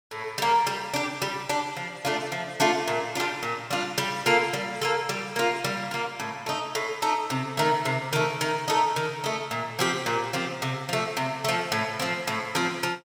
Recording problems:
none

